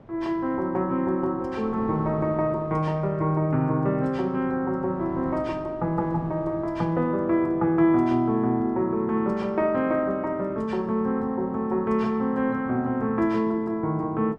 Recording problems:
wind on the microphone; below 510 Hz, SNR 21 dB

